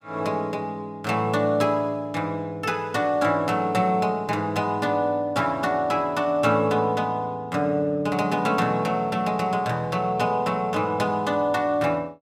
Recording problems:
none

